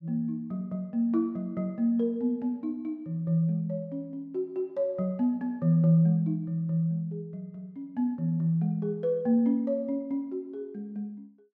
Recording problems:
none

